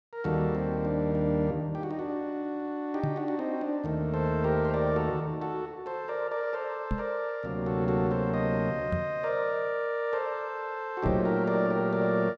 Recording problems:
knock on the microphone; 4 times, first at 3 s; peak +2 dB vs average level

